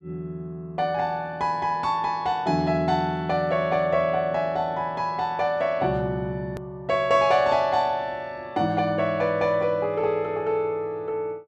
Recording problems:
hard cut with a click; at 6.5 s

